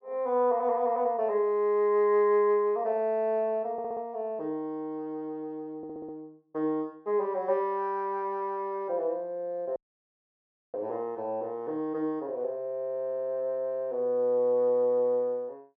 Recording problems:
treble cut off; nothing above 6.2 kHz
audio stuttering; at 3.5 s, at 6 s and at 13 s
audio cutting out; at 10 s for 1 s

